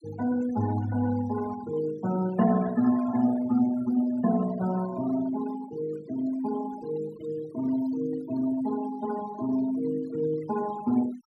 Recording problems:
noise reduction artefacts; signal-to-artefact ratio 15 dB

